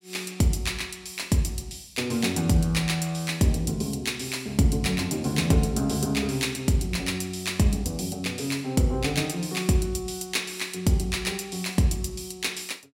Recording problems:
none

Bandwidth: 16 kHz